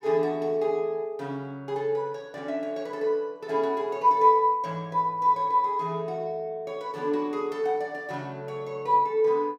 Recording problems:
none

